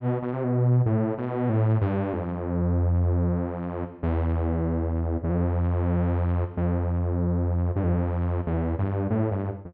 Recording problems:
none

